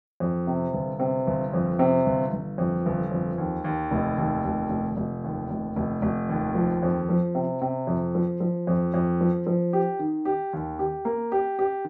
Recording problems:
none

